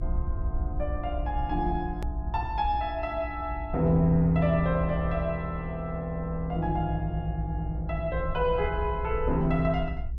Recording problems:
low-frequency rumble; below 62 Hz, SNR 7 dB
click at an edit; at 2 s

